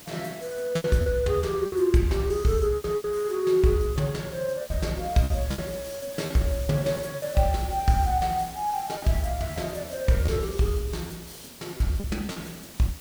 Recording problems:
hiss; slope -2 dB per octave, SNR 16 dB
packet loss; 8% of the sound replaced, filled with repeated pitch periods

